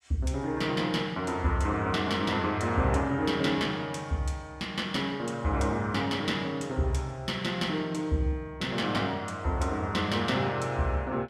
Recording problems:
none

